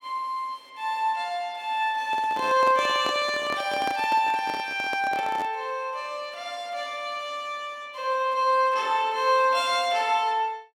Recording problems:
handling noise; from 2 to 5.5 s; peak -4 dB vs average level

